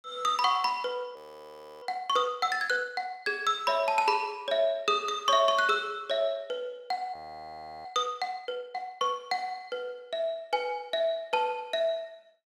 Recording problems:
frozen audio; at 1 s for 0.5 s and at 7 s for 0.5 s

